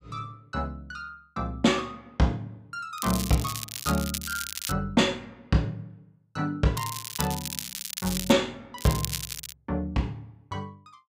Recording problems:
crackling; from 3 to 4.5 s, from 7 to 8.5 s and at 9 s; loose cable, SNR 5 dB

